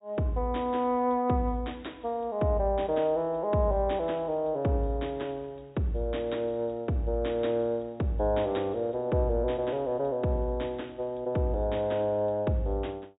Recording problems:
treble cut off; nothing above 4 kHz

